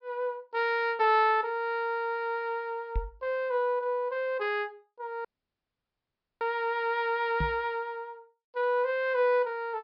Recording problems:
treble missing; nothing above 5.5 kHz
microphone bump; at 3 s and at 7.5 s; peak 0 dB vs average level
dropout; at 5.5 s for 1 s

